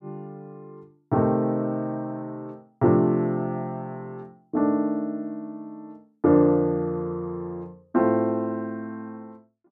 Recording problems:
none

